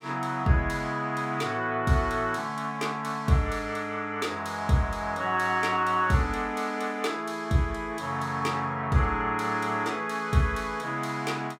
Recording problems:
none

